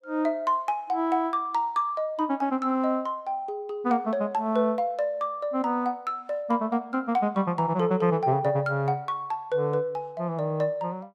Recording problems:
none

